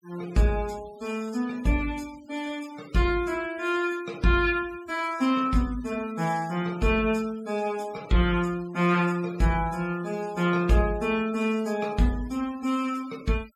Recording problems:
denoising artefacts; signal-to-artefact ratio 21 dB

